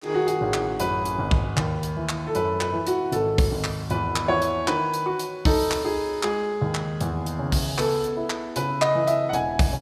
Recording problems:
none

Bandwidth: 15 kHz